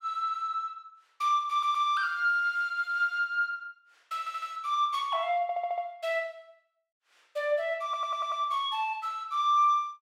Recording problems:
audio stuttering; 4 times, first at 1.5 s

